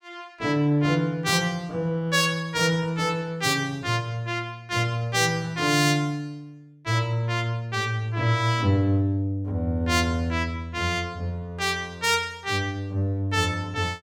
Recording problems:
none

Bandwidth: 17.5 kHz